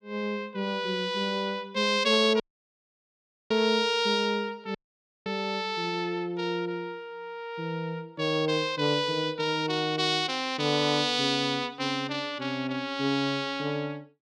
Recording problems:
audio cutting out; at 2.5 s for 1 s and at 5 s for 0.5 s

